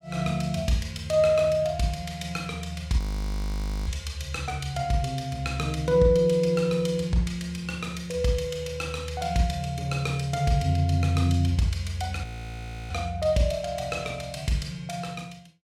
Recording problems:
audio freezing; at 3 s for 1 s and at 12 s for 0.5 s

